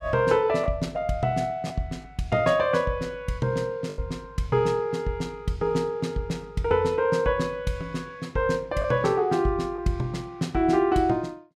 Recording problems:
packet loss; 1.8% of the sound replaced, filled with the last packet

